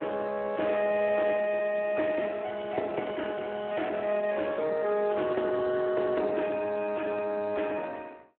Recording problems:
telephone audio; 240 Hz to 3.1 kHz, Speex

